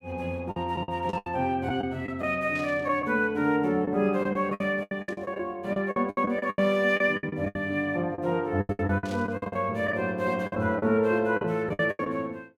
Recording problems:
lost packets; 15% of the sound replaced, filled with the last packet
burst of static; 4 times, first at 1 s; peak -12 dB vs average level

